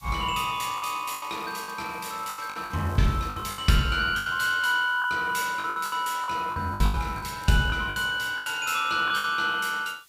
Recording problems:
background hiss; slope +3 dB per octave, SNR 27 dB
packet loss; 13% of the sound replaced, filled with the last packet
crackle; from 0.5 to 3.5 s and at 7 s; loose cable, SNR 27 dB

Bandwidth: 15.5 kHz